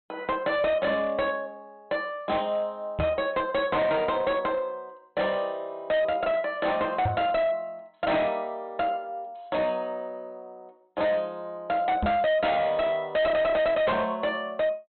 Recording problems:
low-pass filter; nothing above 4.1 kHz
distorted audio; hard clipping, signal-to-distortion ratio 8 dB
microphone bump; at 3 s, at 7 s and at 12 s; peak +2 dB vs average level

